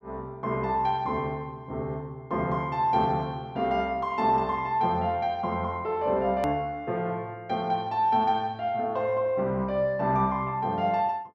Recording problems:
edit click; at 6.5 s

